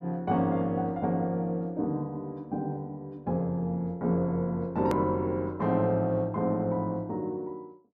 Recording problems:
hard cut with a click; at 5 s

